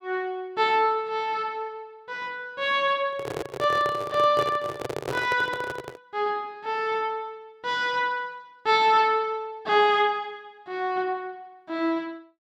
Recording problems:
handling noise; from 3 to 6 s; peak -2 dB vs average level

